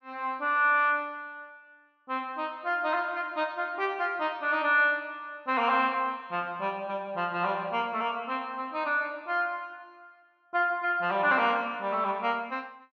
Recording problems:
low-pass filter; nothing above 6.3 kHz

